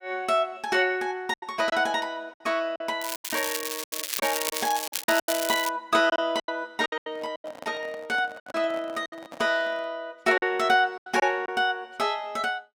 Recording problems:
packet loss; 9% of the sound replaced, filled with silence
crackling; from 3 to 5.5 s; loose cable, SNR 4 dB
handling noise; from 7 to 10 s; peak -9 dB vs average level

